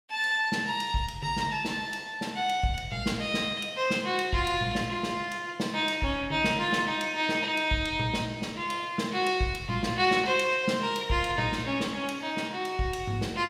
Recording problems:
none

